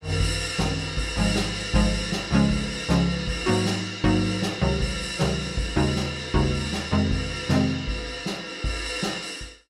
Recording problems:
none

